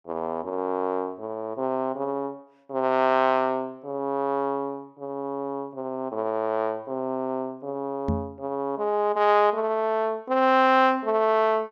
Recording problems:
microphone bump; at 8 s; peak +2 dB vs average level

